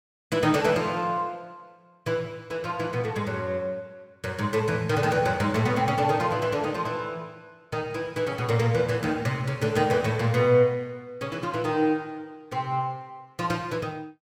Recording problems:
none

